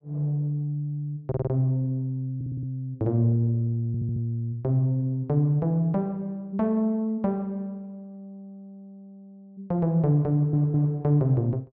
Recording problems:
stutter; 4 times, first at 1.5 s

